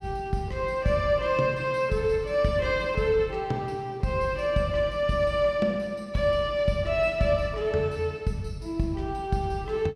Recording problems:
none

